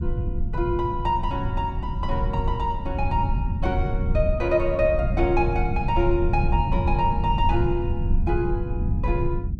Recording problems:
low-frequency rumble; below 110 Hz, SNR 1 dB

